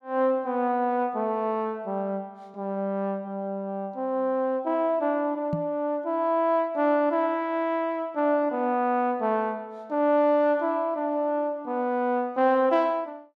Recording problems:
microphone thump; at 5.5 s; peak 0 dB vs average level

